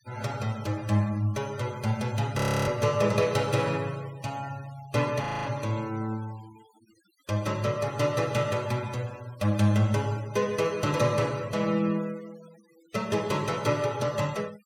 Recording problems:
noise reduction artefacts; signal-to-artefact ratio 21 dB
audio freezing; at 2.5 s and at 5 s

